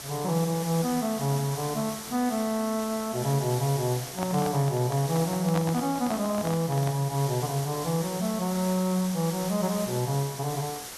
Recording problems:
hiss; slope -1 dB per octave, SNR 9 dB
microphone handling noise; from 4 to 7 s; peak 0 dB vs average level

